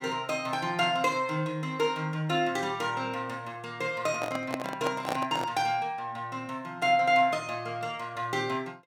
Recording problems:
microphone handling noise; from 4 to 5.5 s; peak +1 dB vs average level

